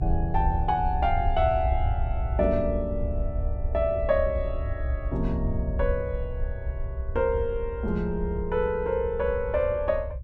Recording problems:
low-frequency rumble; below 76 Hz, SNR 4 dB

